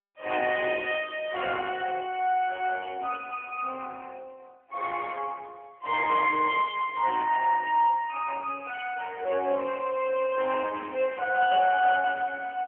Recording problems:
telephone audio; 320 Hz to 3.1 kHz, AMR-NB

